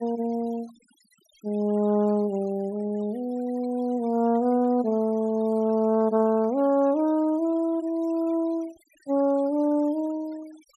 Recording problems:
denoising artefacts; signal-to-artefact ratio 28 dB

